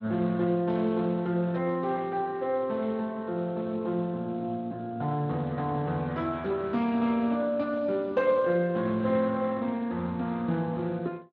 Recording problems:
lossy codec; Speex, log-spectral distance 2 dB

